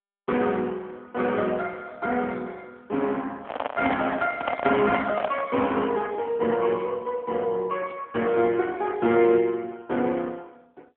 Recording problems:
phone line; 190 Hz to 3.5 kHz, AMR-NB
handling noise; from 3.5 to 5.5 s; peak +3 dB vs average level

